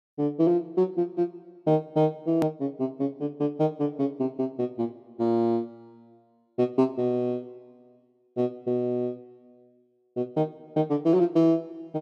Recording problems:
hard cut with a click; at 2.5 s

